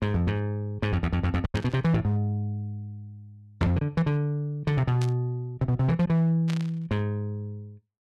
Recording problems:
distorted audio; hard clipping, signal-to-distortion ratio 12 dB
packet loss; 1.5% of the sound replaced, filled with silence
static burst; at 1.5 s, at 5 s and at 6.5 s; peak -7 dB vs average level

